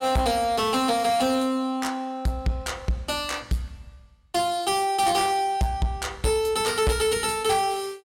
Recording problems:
distorted audio; soft clipping, signal-to-distortion ratio 10 dB

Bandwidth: 16 kHz